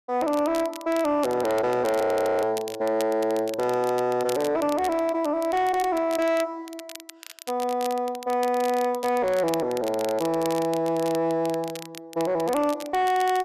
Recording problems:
distorted audio; soft clipping, signal-to-distortion ratio 11 dB
crackling; vinyl, SNR 16 dB
frozen audio; at 2 s

